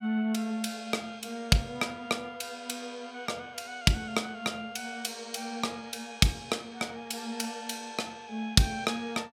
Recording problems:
none

